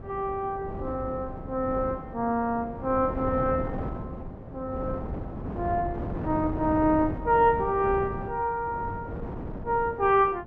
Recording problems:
wind noise; below 420 Hz, SNR 9 dB

